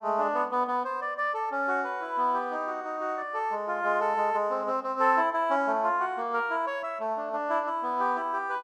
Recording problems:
none

